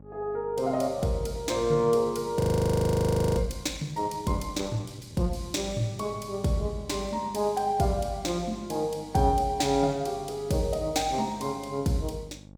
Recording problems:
hum; 50 Hz, harmonics up to 900 Hz, SNR 21 dB
frozen audio; at 2.5 s for 1 s

